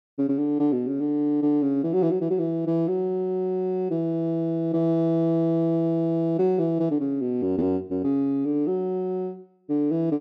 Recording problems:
none

